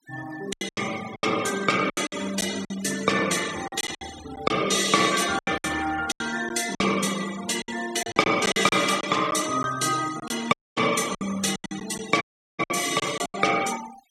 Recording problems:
noise reduction artefacts; signal-to-artefact ratio 13 dB
lost packets; 12% of the sound replaced, filled with silence
audio cutting out; at 11 s and at 12 s

